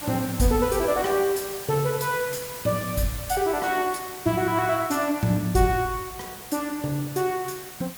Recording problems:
hiss; slope -1 dB per octave, SNR 11 dB

